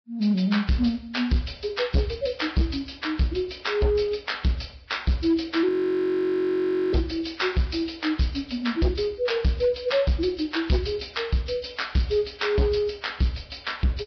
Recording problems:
lossy compression; Vorbis, log-spectral distance 8 dB, nothing above 5.2 kHz
distortion; hard clipping, signal-to-distortion ratio 11 dB
audio freezing; at 5.5 s for 1 s

